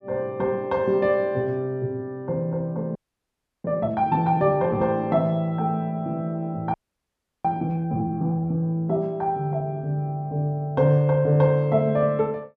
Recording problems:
audio freezing; at 3 s for 0.5 s and at 6.5 s for 0.5 s

